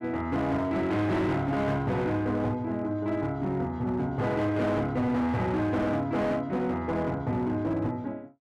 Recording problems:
distorted audio; hard clipping, signal-to-distortion ratio 10 dB

